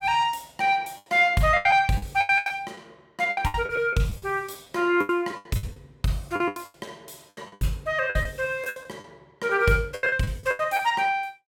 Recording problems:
lost packets; 17% of the sound replaced, filled with the last packet

